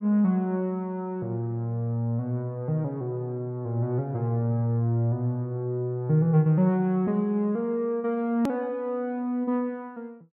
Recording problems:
edit click; at 8.5 s

